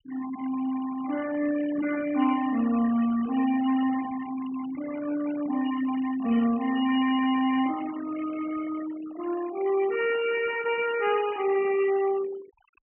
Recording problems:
low-pass filter; nothing above 3.1 kHz
denoising artefacts; signal-to-artefact ratio 15 dB

